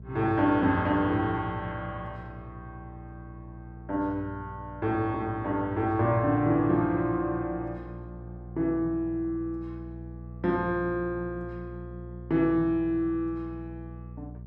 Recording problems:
hum; 60 Hz, harmonics up to 480 Hz, SNR 15 dB

